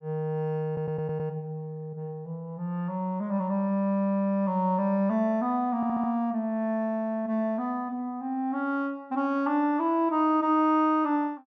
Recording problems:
stutter; at 0.5 s and at 6 s

